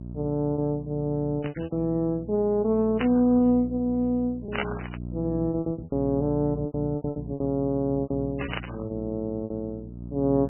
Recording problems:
lossy compression; MP3, log-spectral distance 2 dB, nothing above 7.8 kHz
electrical hum; 60 Hz, harmonics up to 660 Hz, SNR 12 dB
packet loss; 11% of the sound replaced, filled with repeated pitch periods
static burst; 4 times, first at 1.5 s; peak +3 dB vs average level

